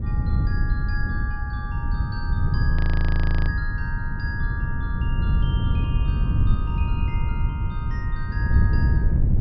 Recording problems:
low-pass filter; nothing above 5.5 kHz
wind noise; below 110 Hz, SNR -11 dB
audio freezing; at 3 s for 0.5 s

